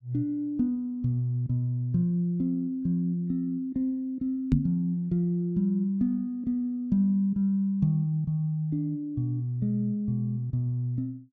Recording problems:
microphone thump; at 4.5 s; peak +8 dB vs average level

